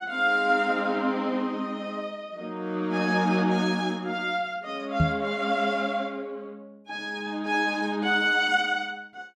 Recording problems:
knock on the microphone; at 5 s; peak +6 dB vs average level

